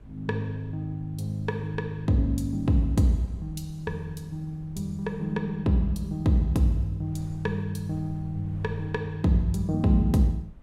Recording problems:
wind on the microphone; below 110 Hz, SNR 22 dB

